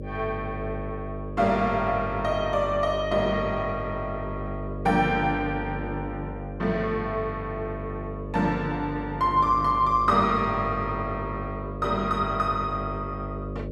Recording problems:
hum; 50 Hz, harmonics up to 600 Hz, SNR 8 dB

